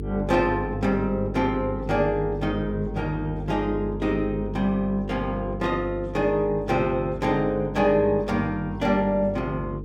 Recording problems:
hum; 50 Hz, harmonics up to 450 Hz, SNR 9 dB

